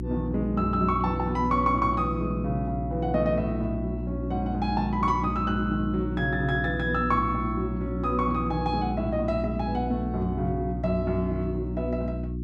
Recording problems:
hum; 60 Hz, harmonics up to 360 Hz, SNR 5 dB

